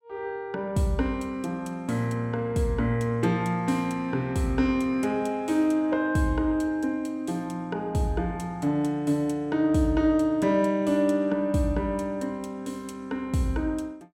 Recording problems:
none

